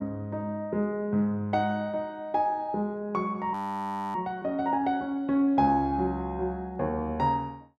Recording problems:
audio freezing; at 3.5 s for 0.5 s

